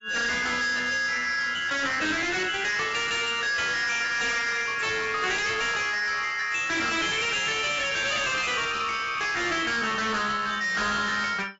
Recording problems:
lossy compression; AAC, log-spectral distance 6 dB, nothing above 7.6 kHz
distortion; hard clipping, signal-to-distortion ratio 6 dB

